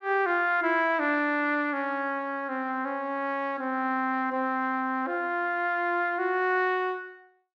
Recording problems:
none

